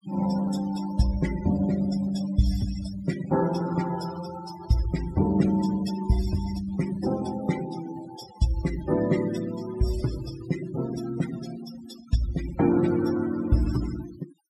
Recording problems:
denoising artefacts; signal-to-artefact ratio 13 dB

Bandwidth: 15 kHz